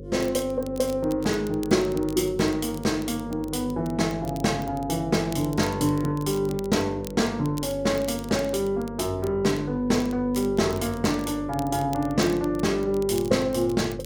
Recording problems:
hum; 50 Hz, harmonics up to 550 Hz, SNR 13 dB
crackle; vinyl, SNR 21 dB

